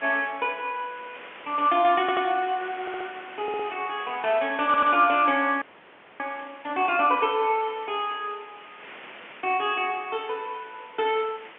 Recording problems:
phone line; 240 Hz to 3.3 kHz, G.711
background hiss; SNR 19 dB
stutter; 4 times, first at 2 s
frozen audio; at 5.5 s for 0.5 s

